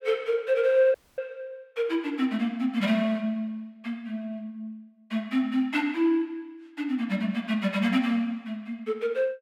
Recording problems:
audio cutting out; at 1 s

